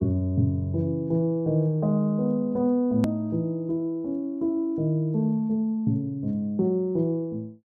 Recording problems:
edit click; at 3 s

